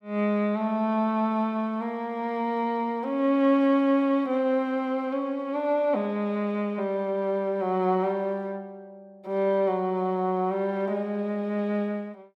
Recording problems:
none

